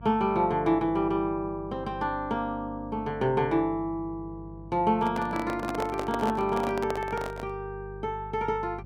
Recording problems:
hum; 50 Hz, harmonics up to 550 Hz, SNR 16 dB
handling noise; from 5 to 7.5 s; peak 0 dB vs average level

